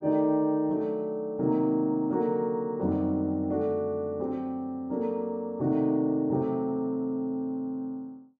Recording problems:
none

